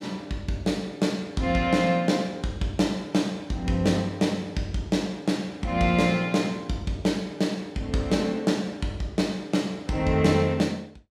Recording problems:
none

